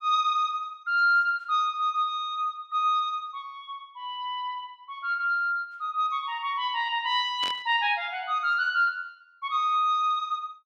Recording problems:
static burst; at 7.5 s; peak -7 dB vs average level

